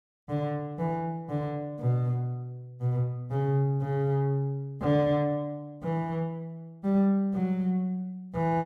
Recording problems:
none

